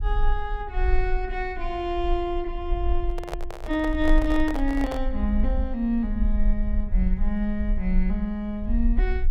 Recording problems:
low-frequency rumble; below 44 Hz, SNR 2 dB
handling noise; from 3 to 5 s; peak -1 dB vs average level

